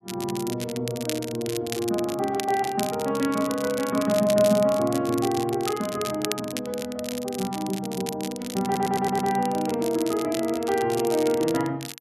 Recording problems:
crackling; vinyl, SNR 11 dB
stutter; at 8.5 s

